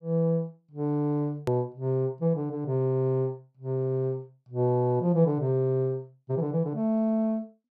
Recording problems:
click at an edit; at 1.5 s

